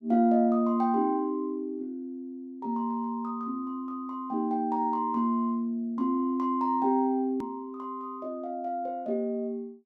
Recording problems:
edit click; at 7.5 s

